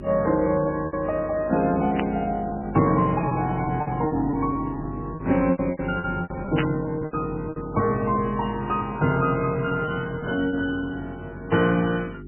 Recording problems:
lossy compression; MP3, log-spectral distance 3 dB, nothing above 2.5 kHz
hum; 50 Hz, harmonics up to 400 Hz, SNR 13 dB
lost packets; 9% of the sound replaced, filled with repeated pitch periods
static burst; at 2 s and at 6.5 s; peak +1 dB vs average level

